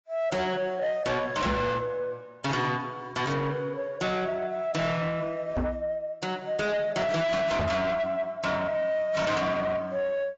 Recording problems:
lossy codec; AAC, log-spectral distance 2 dB, nothing above 7.6 kHz
distorted audio; soft clipping, signal-to-distortion ratio 7 dB
knock on the microphone; at 1.5 s, at 5.5 s and at 7.5 s; peak +5 dB vs average level

